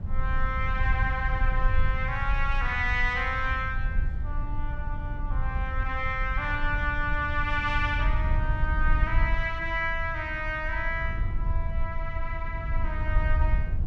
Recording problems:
low-frequency rumble; below 68 Hz, SNR 1 dB

